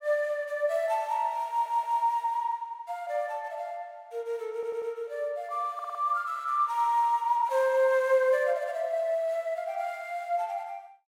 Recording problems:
audio stuttering; at 1.5 s, at 4.5 s and at 5.5 s

